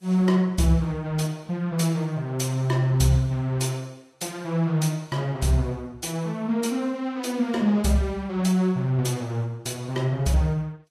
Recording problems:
codec artefacts; Vorbis, log-spectral distance 2 dB, nothing above 12.3 kHz

